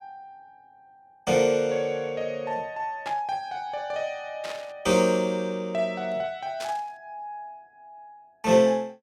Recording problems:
burst of static; at 3 s, at 4.5 s and at 6.5 s; peak -7 dB vs average level

